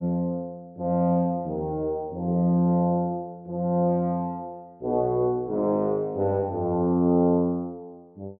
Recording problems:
none

